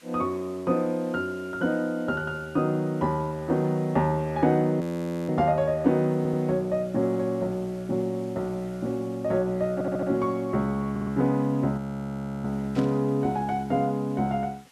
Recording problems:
hiss; slope 0 dB per octave, SNR 27 dB
audio freezing; at 5 s and at 12 s for 0.5 s
audio stuttering; at 6 s, at 9.5 s and at 11 s
burst of static; at 13 s; peak -11 dB vs average level

